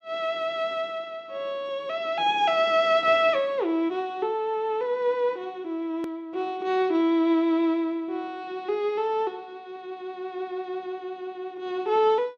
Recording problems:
click at an edit; at 6 s

